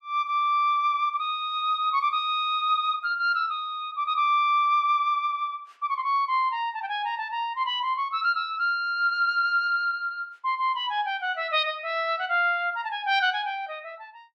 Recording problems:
none

